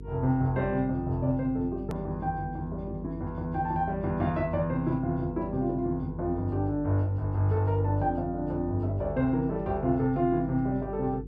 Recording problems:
hum; 50 Hz, harmonics up to 450 Hz, SNR 13 dB
click at an edit; at 2 s

